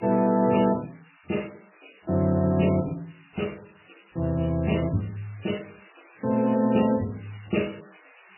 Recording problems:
lossy compression; MP3, log-spectral distance 19 dB, nothing above 2.9 kHz
background hiss; SNR 27 dB

